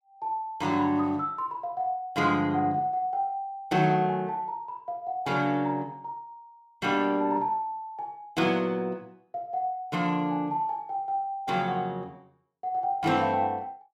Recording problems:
none

